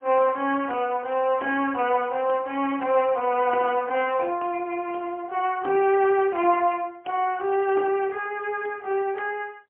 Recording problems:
telephone audio; 300 Hz to 3.2 kHz, AMR-NB, then MP3

